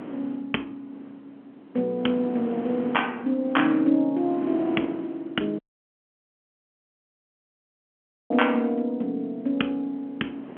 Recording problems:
telephone audio; 190 Hz to 3.3 kHz, G.711
wind noise; below 530 Hz, SNR 14 dB
audio cutting out; at 5.5 s for 2.5 s

